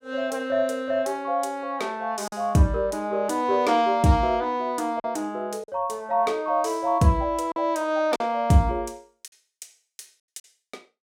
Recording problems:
lost packets; 2% of the sound replaced, filled with silence

